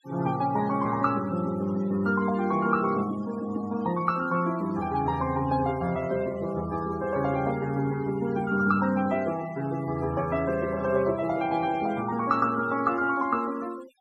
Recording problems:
noise reduction artefacts; signal-to-artefact ratio 19 dB

